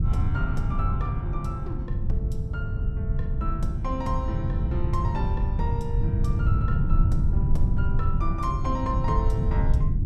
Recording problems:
low-frequency rumble; below 110 Hz, SNR -7 dB

